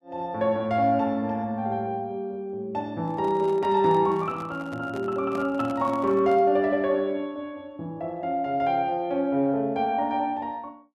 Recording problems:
microphone handling noise; from 3 to 6.5 s; peak -9 dB vs average level

